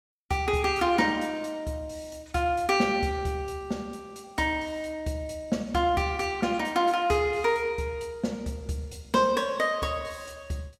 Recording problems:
none

